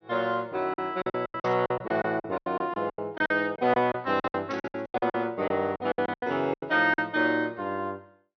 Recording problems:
treble missing; nothing above 6.1 kHz
packet loss; 18% of the sound replaced, filled with silence
static burst; at 1.5 s and at 4.5 s; peak -10 dB vs average level

